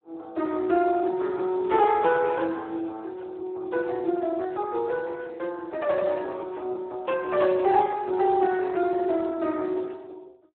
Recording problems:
telephone audio; 260 Hz to 3.6 kHz, Speex

